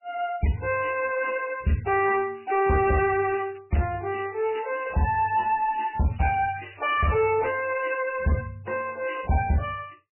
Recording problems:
lossy compression; MP3, log-spectral distance 6 dB, nothing above 2.4 kHz
distorted audio; soft clipping, signal-to-distortion ratio 10 dB
crackle; from 2.5 to 3.5 s and from 4 to 7 s; loose cable, SNR 25 dB

